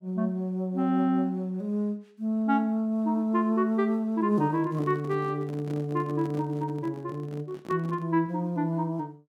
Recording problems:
microphone handling noise; from 4.5 to 8 s; peak -7 dB vs average level

